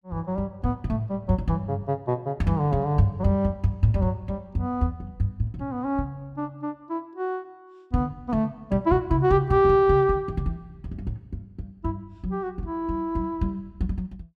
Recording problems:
none

